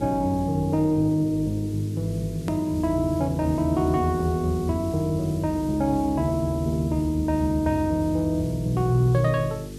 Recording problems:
hum; 50 Hz, harmonics up to 450 Hz, SNR 14 dB
hiss; SNR 23 dB
click at an edit; at 2.5 s

